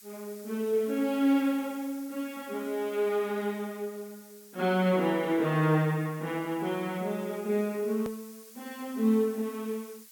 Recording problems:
background hiss; slope +5 dB per octave, SNR 21 dB
hard cut with a click; at 8 s

